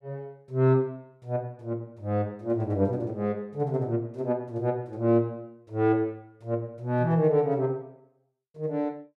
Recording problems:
none

